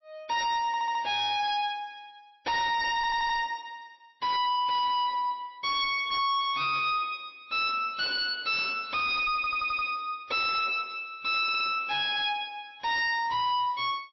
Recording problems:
codec artefacts; MP3, log-spectral distance 4 dB, nothing above 4.9 kHz
distortion; hard clipping, signal-to-distortion ratio 5 dB
audio stuttering; 4 times, first at 0.5 s

